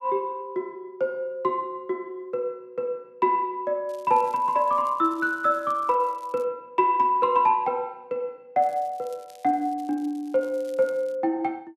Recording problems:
crackle; from 4 to 6.5 s and from 8.5 to 11 s; loose cable, SNR 29 dB

